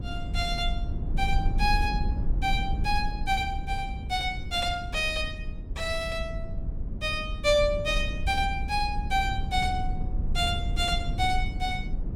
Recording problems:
rumble; below 80 Hz, SNR 4 dB

